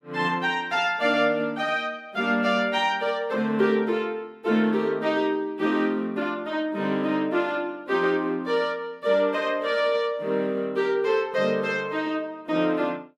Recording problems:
none

